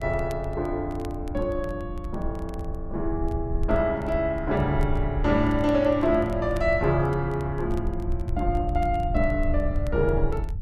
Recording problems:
low-frequency rumble; below 76 Hz, SNR 6 dB
crackle; vinyl, SNR 28 dB

